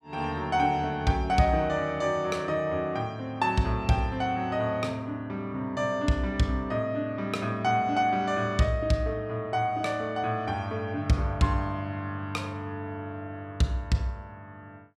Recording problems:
none

